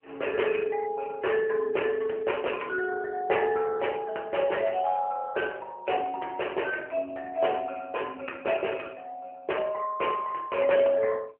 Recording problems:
telephone audio; 320 Hz to 3 kHz, AMR-NB

